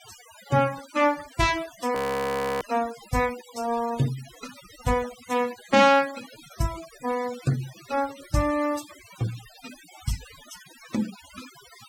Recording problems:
denoising artefacts; signal-to-artefact ratio 16 dB
audio freezing; at 2 s for 0.5 s

